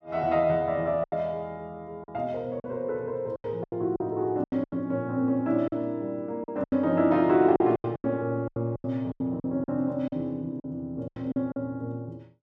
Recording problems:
lost packets; 12% of the sound replaced, filled with silence

